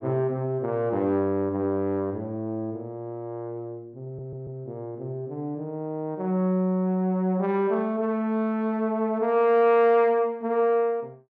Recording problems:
audio stuttering; at 4 s

